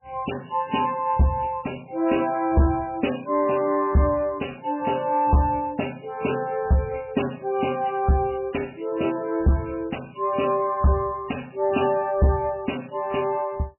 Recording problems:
lossy compression; MP3, log-spectral distance 6 dB, nothing above 2.9 kHz
distortion; soft clipping, signal-to-distortion ratio 11 dB

